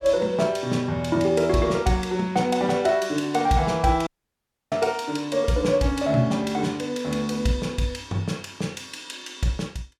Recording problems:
dropout; at 4 s for 0.5 s

